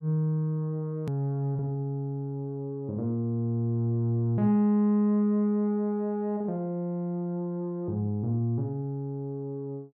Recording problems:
edit click; at 1 s

